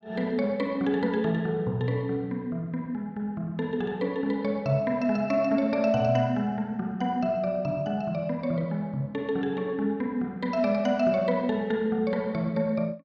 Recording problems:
none

